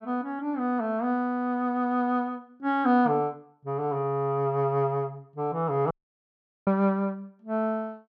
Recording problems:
audio cutting out; at 6 s for 1 s

